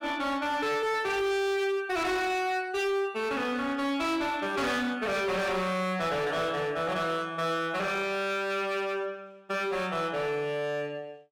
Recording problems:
distortion; hard clipping, signal-to-distortion ratio 8 dB

